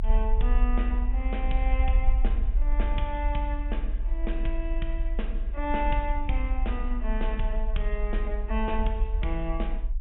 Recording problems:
treble cut off; nothing above 3.4 kHz
low-frequency rumble; below 46 Hz, strongest tone 28 Hz, SNR -4 dB

